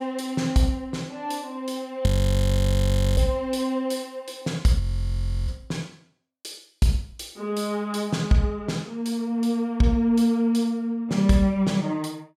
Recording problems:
audio freezing; at 2 s for 1 s and at 5 s for 0.5 s

